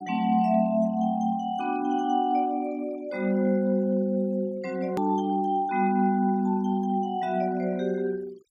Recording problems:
denoising artefacts; signal-to-artefact ratio 27 dB
edit click; at 5 s

